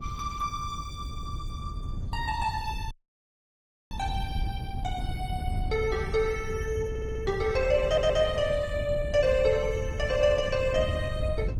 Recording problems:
lossy codec; Opus, log-spectral distance 2 dB, nothing above 19 kHz
wind noise; below 110 Hz, SNR 7 dB
audio cutting out; at 3 s for 1 s
stutter; at 7 s and at 8 s

